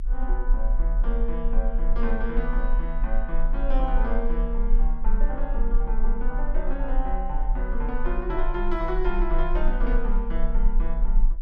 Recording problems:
low-frequency rumble; below 36 Hz, strongest tone 22 Hz, SNR -4 dB

